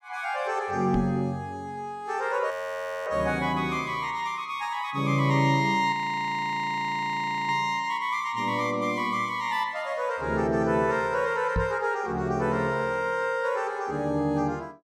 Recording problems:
microphone thump; at 1 s and at 12 s; peak +2 dB vs average level
frozen audio; at 2.5 s for 0.5 s and at 6 s for 1.5 s

